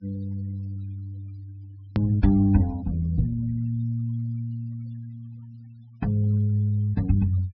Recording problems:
treble missing; nothing above 5.5 kHz
denoising artefacts; signal-to-artefact ratio 27 dB
click at an edit; at 2 s

